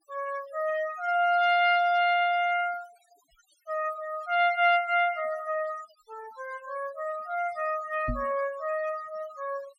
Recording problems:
denoising artefacts; signal-to-artefact ratio 20 dB
microphone thump; at 8 s; peak -2 dB vs average level

